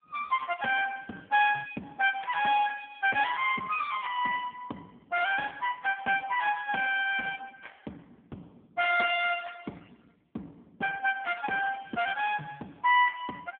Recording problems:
telephone audio; 190 Hz to 3.1 kHz, AMR-NB

